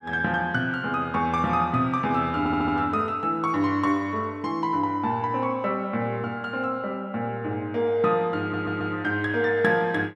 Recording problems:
stutter; at 2.5 s and at 8.5 s

